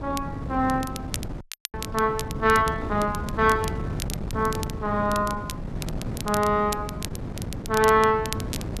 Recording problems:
wind noise; below 270 Hz, SNR 9 dB
crackling; vinyl, SNR 13 dB
dropout; at 1.5 s

